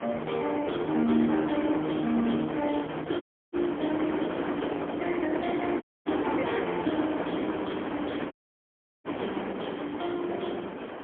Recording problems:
phone line; 190 Hz to 3.3 kHz, AMR-NB, then MP3
wind noise; below 1 kHz, SNR 5 dB
audio cutting out; at 3 s, at 6 s and at 8.5 s for 0.5 s

